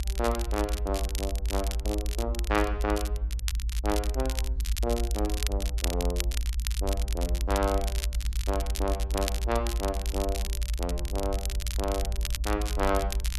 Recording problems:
low-frequency rumble; below 60 Hz, strongest tone 58 Hz, SNR -1 dB
crackle; vinyl, SNR 6 dB

